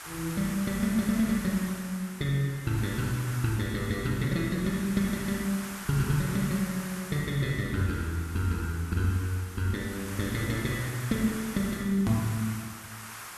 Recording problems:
background hiss; SNR 11 dB
edit click; at 12 s

